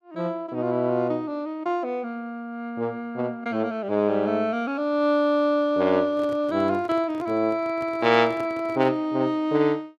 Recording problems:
handling noise; from 6 to 9 s; peak -9 dB vs average level

